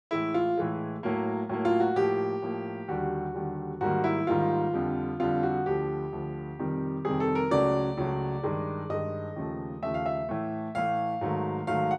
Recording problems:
none

